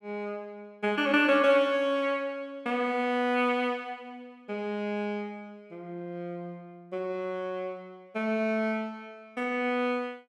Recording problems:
none

